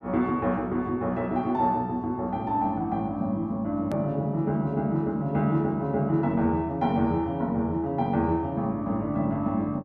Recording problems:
click at an edit; at 4 s

